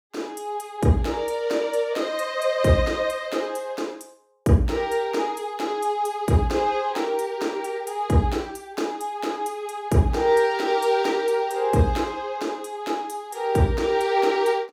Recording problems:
none

